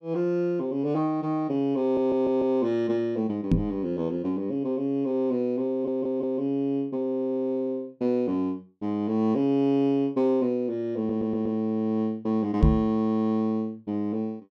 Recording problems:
audio stuttering; at 2 s, at 5.5 s and at 11 s
microphone thump; at 3.5 s and at 13 s; peak +9 dB vs average level

